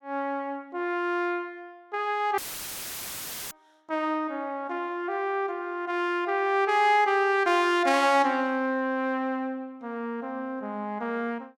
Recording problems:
audio cutting out; at 2.5 s for 1 s; filled with static

